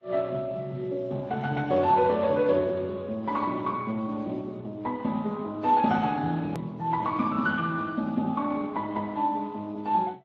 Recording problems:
lossy codec; Speex, then AAC, log-spectral distance 3 dB
edit click; at 6.5 s

